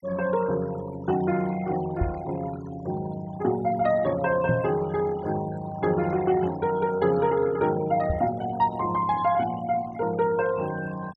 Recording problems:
denoising artefacts; signal-to-artefact ratio 17 dB
knock on the microphone; at 2 s, at 4.5 s and at 8 s; peak +3 dB vs average level

